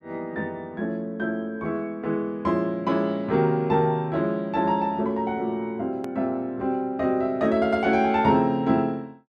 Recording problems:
edit click; at 6 s

